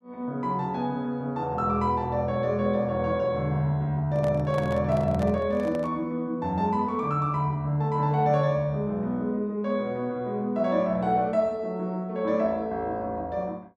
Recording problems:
microphone handling noise; from 4 to 6 s; peak -6 dB vs average level

